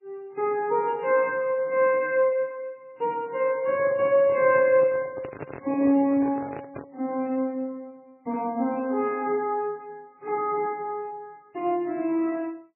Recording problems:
lossy compression; MP3, log-spectral distance 2 dB
microphone handling noise; from 3.5 to 7 s; peak -6 dB vs average level

